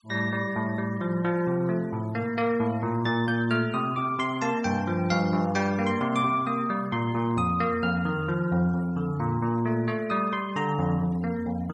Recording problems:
noise reduction artefacts; signal-to-artefact ratio 25 dB

